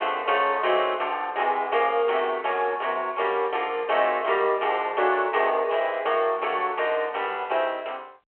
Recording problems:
phone line; 340 Hz to 3.3 kHz, G.726

